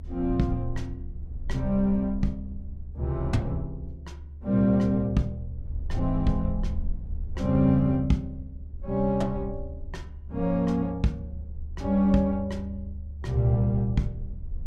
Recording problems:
rumble; below 74 Hz, SNR 11 dB

